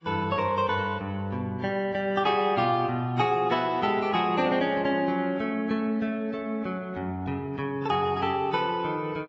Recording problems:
codec artefacts; AAC, log-spectral distance 2 dB, nothing above 7.6 kHz

